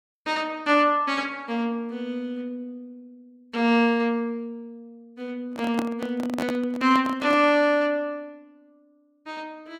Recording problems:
microphone handling noise; from 5.5 to 7.5 s; peak -1 dB vs average level

